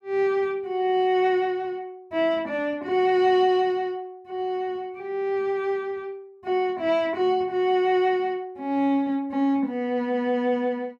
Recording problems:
none

